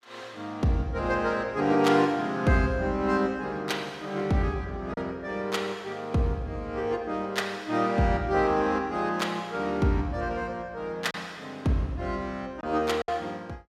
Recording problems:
packet loss; 1% of the sound replaced, filled with silence

